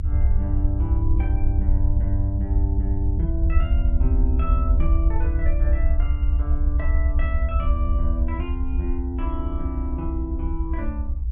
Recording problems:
rumble; below 66 Hz, SNR -7 dB

